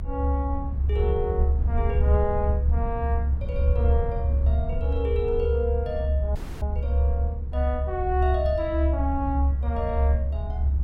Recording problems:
low-frequency rumble; below 72 Hz, strongest tone 68 Hz, SNR -4 dB
audio cutting out; at 6.5 s

